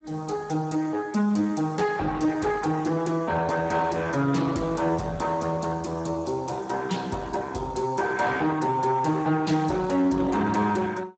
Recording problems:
lossy compression; Speex, log-spectral distance 5 dB, nothing above 7.8 kHz
distortion; soft clipping, signal-to-distortion ratio 11 dB

